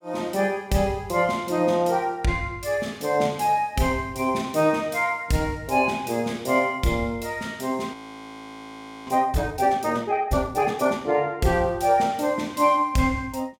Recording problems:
frozen audio; at 8 s for 1 s

